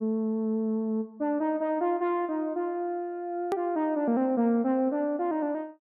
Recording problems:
click at an edit; at 3.5 s

